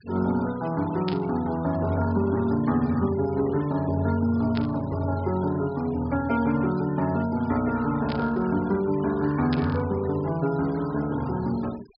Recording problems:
treble missing; nothing above 5.5 kHz
noise reduction artefacts; signal-to-artefact ratio 20 dB
burst of static; 4 times, first at 1 s; peak -5 dB vs average level

